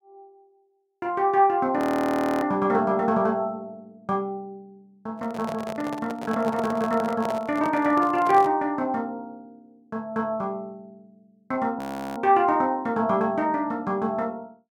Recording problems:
frozen audio; at 2 s for 0.5 s and at 12 s
handling noise; from 5 to 8.5 s; peak -5 dB vs average level

